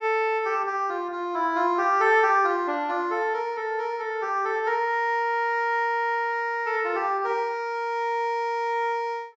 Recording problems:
treble missing; nothing above 8 kHz

